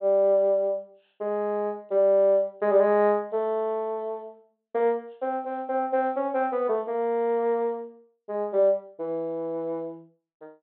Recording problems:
treble missing; nothing above 4 kHz

